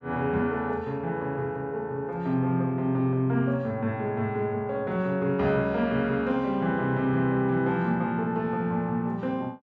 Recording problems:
none

